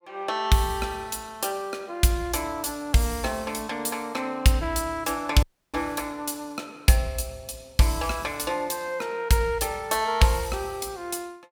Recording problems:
audio cutting out; at 5.5 s

